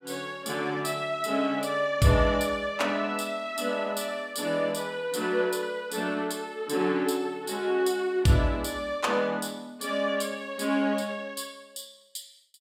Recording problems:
none

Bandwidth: 16 kHz